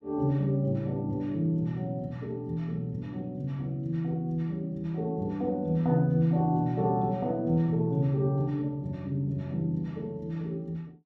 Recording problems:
none

